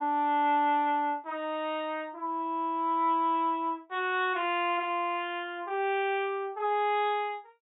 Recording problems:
treble cut off; nothing above 4 kHz

